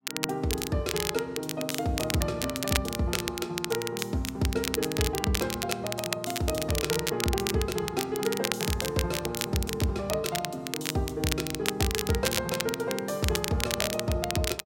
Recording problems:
crackling; vinyl, SNR 2 dB

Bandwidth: 16 kHz